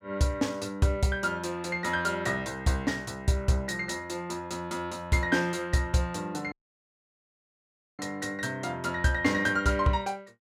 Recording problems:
audio cutting out; at 6.5 s for 1.5 s

